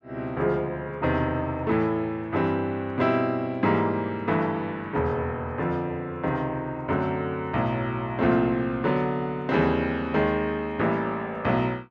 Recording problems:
none

